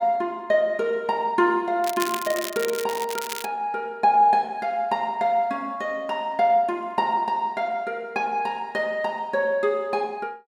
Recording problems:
crackle; from 2 to 3.5 s; loose cable, SNR 9 dB

